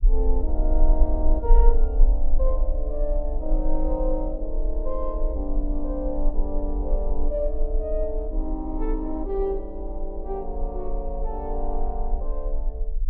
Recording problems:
low-frequency rumble; below 38 Hz, strongest tone 20 Hz, SNR -3 dB

